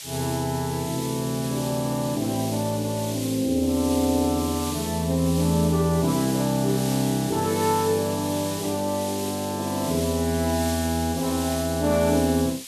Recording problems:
background hiss; SNR 9 dB

